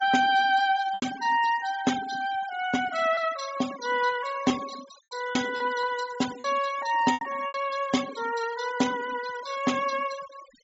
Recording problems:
treble cut off; nothing above 8 kHz
noise reduction artefacts; signal-to-artefact ratio 13 dB
packet loss; 4% of the sound replaced, filled with repeated pitch periods

